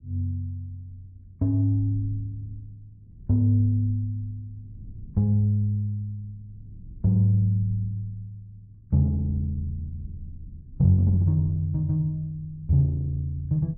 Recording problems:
low-frequency rumble; below 120 Hz, SNR 21 dB

